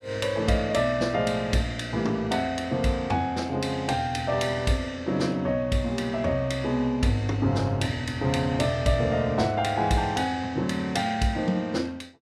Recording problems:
none

